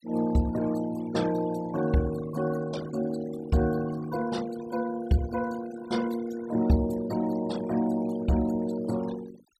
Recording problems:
noise reduction artefacts; signal-to-artefact ratio 16 dB

